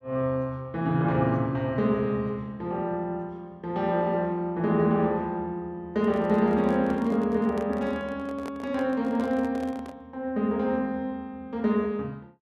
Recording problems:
handling noise; from 6 to 10 s; peak -8 dB vs average level

